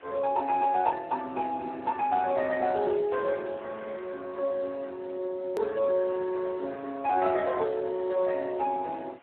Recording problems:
telephone audio; 260 Hz to 2.6 kHz, Speex
hiss; SNR 25 dB
edit click; at 5.5 s

